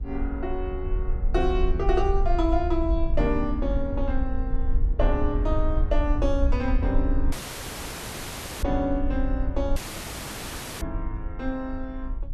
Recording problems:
wind noise; below 56 Hz, SNR 0 dB
audio cutting out; at 7.5 s for 1.5 s and at 10 s for 1 s

